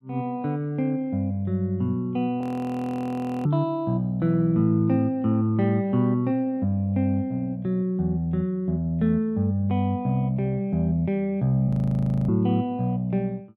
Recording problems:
frozen audio; at 2.5 s for 1 s and at 12 s for 0.5 s

